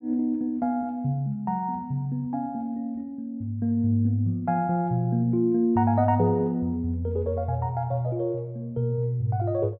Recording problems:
none

